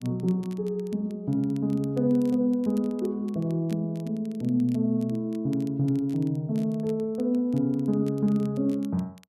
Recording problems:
crackle; vinyl, SNR 29 dB

